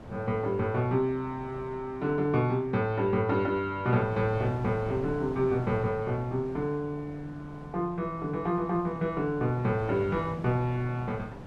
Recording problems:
wind on the microphone; below 560 Hz, SNR 15 dB

